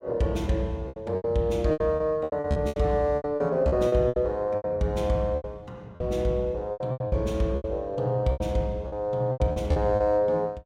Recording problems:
packet loss; 15% of the sound replaced, filled with repeated pitch periods

